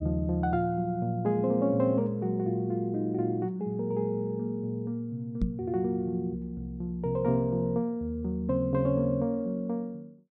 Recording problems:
knock on the microphone; at 5.5 s; peak +4 dB vs average level

